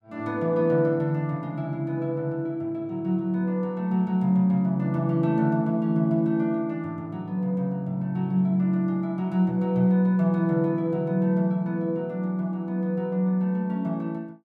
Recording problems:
none

